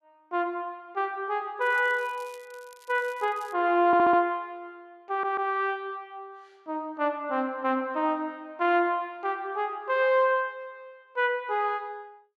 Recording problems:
crackling; from 1.5 to 3.5 s; loose cable, SNR 27 dB
audio stuttering; at 4 s and at 5 s

